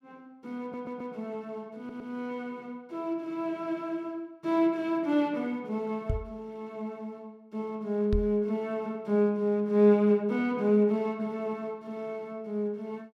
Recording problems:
stutter; at 0.5 s and at 2 s
microphone thump; at 6 s and at 8 s; peak +3 dB vs average level

